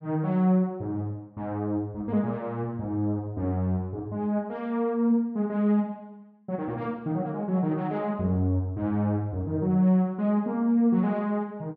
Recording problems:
none

